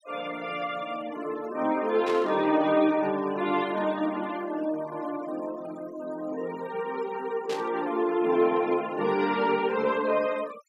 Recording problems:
noise reduction artefacts; signal-to-artefact ratio 18 dB
static burst; at 2 s and at 7.5 s; peak -7 dB vs average level

